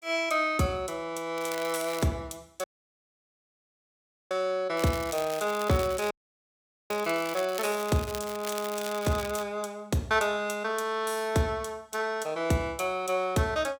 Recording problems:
crackling; at 1.5 s and from 5 to 9.5 s; loose cable, SNR 11 dB
audio cutting out; at 2.5 s for 1.5 s and at 6 s for 1 s

